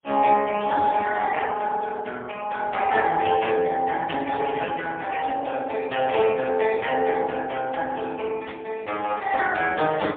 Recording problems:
telephone audio; 320 Hz to 3.4 kHz, AMR-NB, then MP3
static burst; 4 times, first at 3 s; peak -8 dB vs average level

